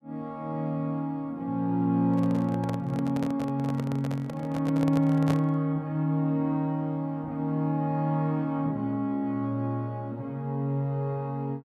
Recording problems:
handling noise; from 2 to 5.5 s; peak 0 dB vs average level

